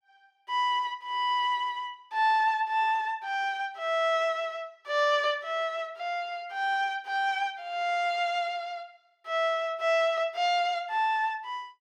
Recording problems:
none

